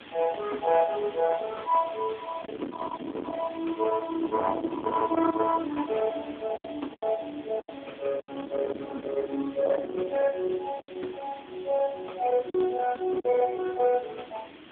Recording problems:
telephone audio; 240 Hz to 2.4 kHz, AMR-NB
distortion; soft clipping, signal-to-distortion ratio 8 dB
hiss; SNR 21 dB
wind noise; below 990 Hz, SNR 12 dB
lost packets; 3% of the sound replaced, filled with silence

